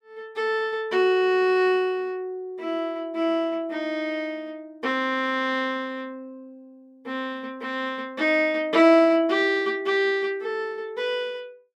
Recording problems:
none

